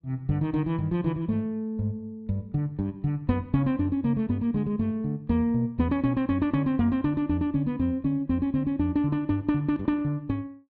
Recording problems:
none

